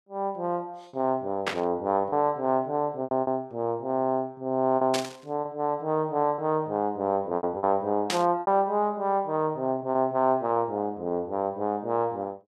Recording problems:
lost packets; 5% of the sound replaced, filled with repeated pitch periods
static burst; at 1.5 s, at 5 s and at 8 s; peak +3 dB vs average level

